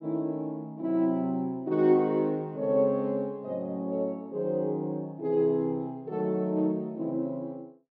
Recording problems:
low-pass filter; nothing above 5.9 kHz

